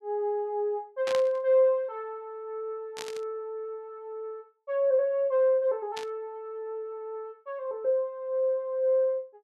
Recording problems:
static burst; at 1 s, at 3 s and at 6 s; peak -4 dB vs average level

